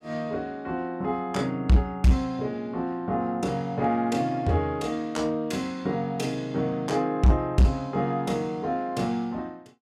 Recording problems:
distorted audio; hard clipping, signal-to-distortion ratio 8 dB

